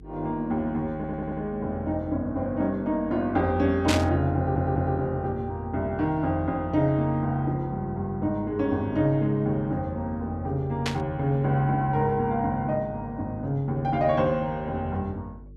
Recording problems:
hum; 50 Hz, harmonics up to 450 Hz, SNR 20 dB
stutter; at 1 s and at 4.5 s
static burst; at 4 s and at 11 s; peak +3 dB vs average level

